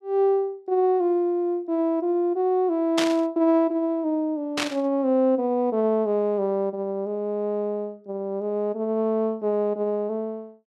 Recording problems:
static burst; at 3 s and at 4.5 s; peak +3 dB vs average level

